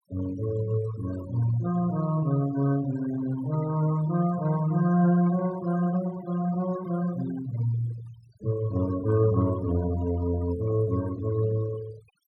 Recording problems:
noise reduction artefacts; signal-to-artefact ratio 17 dB

